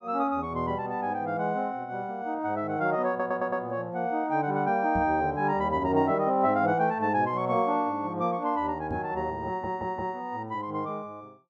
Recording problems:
audio stuttering; at 3 s and at 9.5 s
microphone thump; at 5 s and at 9 s; peak -2 dB vs average level

